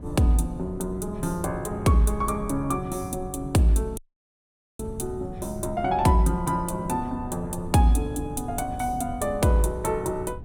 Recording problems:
wind on the microphone; below 150 Hz, SNR 13 dB
dropout; at 4 s for 1 s

